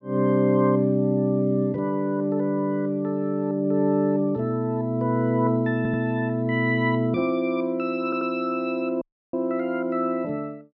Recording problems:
stutter; at 6 s and at 8 s
audio cutting out; at 9 s

